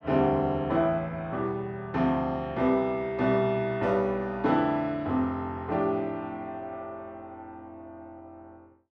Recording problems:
none

